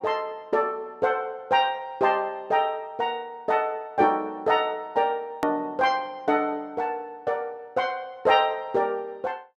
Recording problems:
edit click; at 5.5 s

